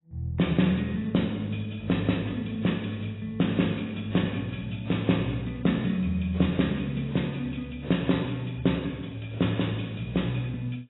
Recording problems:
lossy codec; AAC, log-spectral distance 6 dB, nothing above 3.9 kHz

